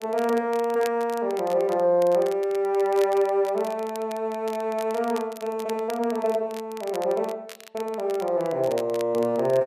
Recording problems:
crackle; vinyl, SNR 20 dB

